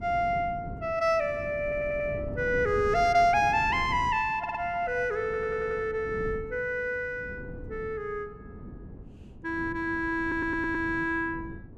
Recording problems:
wind on the microphone; below 260 Hz, SNR 14 dB
stutter; 4 times, first at 1.5 s

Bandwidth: 13.5 kHz